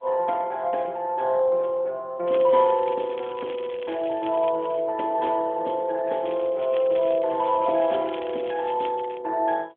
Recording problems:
phone line; 280 Hz to 3.3 kHz, AMR-NB
crackle; from 2.5 to 5 s and from 6.5 to 9 s; loose cable, SNR 20 dB

